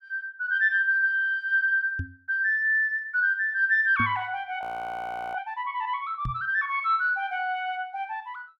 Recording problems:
microphone bump; at 2 s, at 4 s and at 6.5 s; peak -2 dB vs average level
audio freezing; at 4.5 s for 0.5 s

